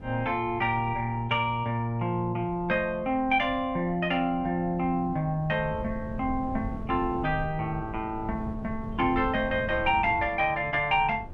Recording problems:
wind noise; below 170 Hz, SNR 14 dB

